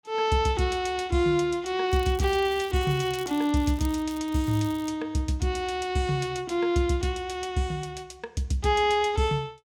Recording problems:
crackle; from 2 to 4 s and at 4.5 s; loose cable, SNR 21 dB

